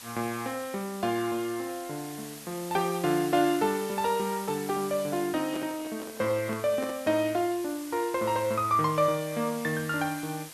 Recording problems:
hiss; slope 0 dB per octave, SNR 14 dB
handling noise; from 5.5 to 7 s; peak -5 dB vs average level

